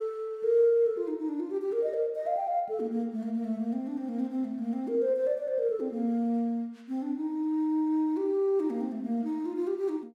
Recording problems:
none

